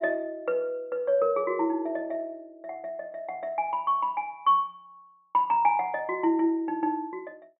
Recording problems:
treble cut off; nothing above 4 kHz

